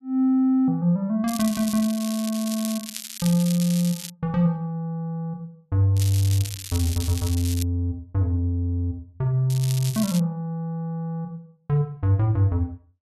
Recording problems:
crackle; from 1.5 to 4 s, from 6 to 7.5 s and at 9.5 s; loose cable, SNR 10 dB

